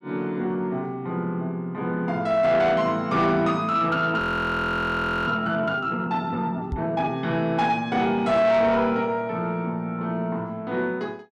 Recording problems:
distortion; soft clipping, signal-to-distortion ratio 12 dB
audio freezing; at 4 s for 1 s
microphone thump; at 6.5 s; peak -2 dB vs average level

